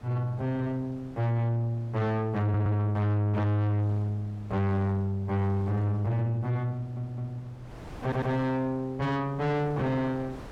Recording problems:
distortion; soft clipping, signal-to-distortion ratio 6 dB
wind noise; below 720 Hz, SNR 20 dB
stutter; at 2.5 s, at 7 s and at 8 s

